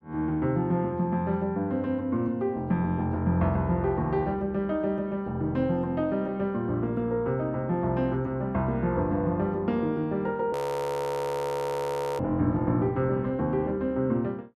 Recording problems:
audio freezing; at 11 s for 1.5 s

